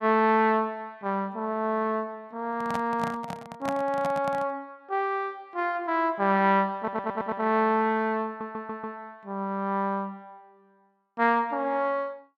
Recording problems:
handling noise; from 2.5 to 4.5 s; peak -2 dB vs average level
stutter; at 7 s and at 8.5 s

